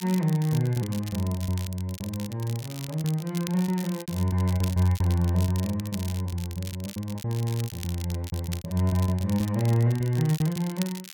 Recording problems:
crackling; vinyl, SNR 15 dB
lost packets; 16% of the sound replaced, filled with repeated pitch periods

